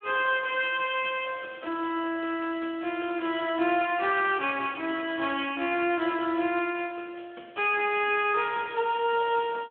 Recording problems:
phone line; 220 Hz to 3.4 kHz, Speex

